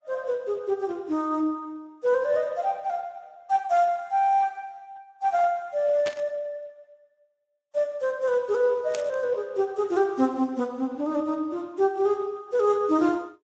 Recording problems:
lossy codec; Vorbis, then Speex, log-spectral distance 2 dB
burst of static; at 6 s and at 9 s; peak -5 dB vs average level

